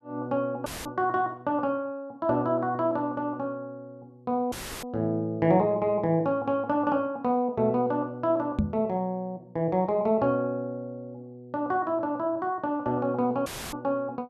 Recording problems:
dropout; at 0.5 s, at 4.5 s and at 13 s; filled with static
microphone bump; at 8.5 s; peak +6 dB vs average level

